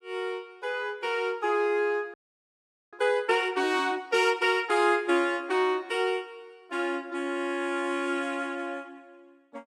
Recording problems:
frozen audio; at 2 s for 1 s

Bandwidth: 15.5 kHz